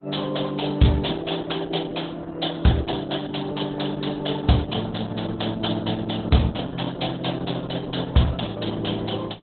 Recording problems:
lossy codec; AAC, then Opus, log-spectral distance 10 dB, nothing above 4 kHz

